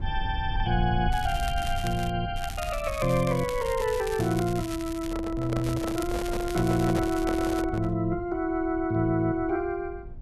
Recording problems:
rumble; below 82 Hz, SNR 10 dB
crackle; at 1 s, from 2.5 to 5 s and from 5.5 to 7.5 s; loose cable, SNR 14 dB
handling noise; from 5 to 8 s; peak -1 dB vs average level

